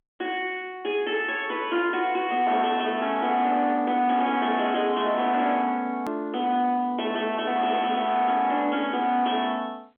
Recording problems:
phone line; 220 Hz to 3.4 kHz, G.711
distortion; soft clipping, signal-to-distortion ratio 11 dB
click at an edit; at 6 s

